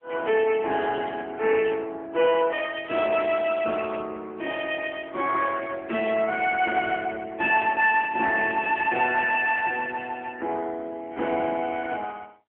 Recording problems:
telephone audio; 240 Hz to 3.3 kHz, AMR-NB

